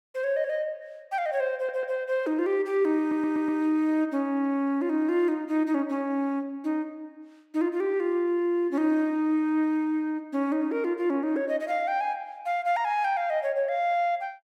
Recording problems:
audio stuttering; at 1.5 s and at 3 s

